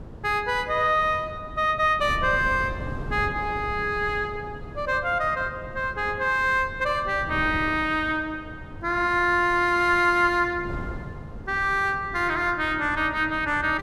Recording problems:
wind on the microphone; below 260 Hz, SNR 15 dB

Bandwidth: 14.5 kHz